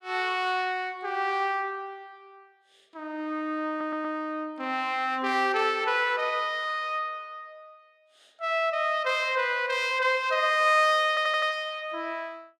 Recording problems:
audio stuttering; at 3.5 s and at 11 s

